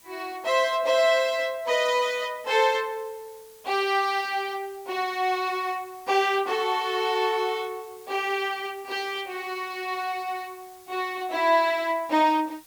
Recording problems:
hiss; slope +1 dB per octave, SNR 25 dB

